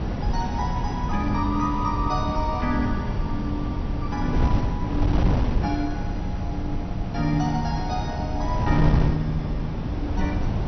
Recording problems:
treble missing; nothing above 6 kHz
wind on the microphone; below 180 Hz, SNR -1 dB

